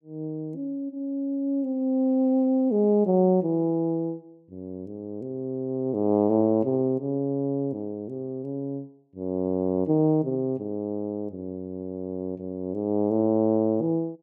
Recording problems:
none

